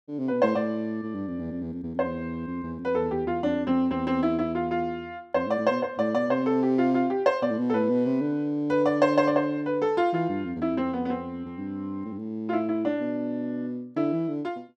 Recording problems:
none

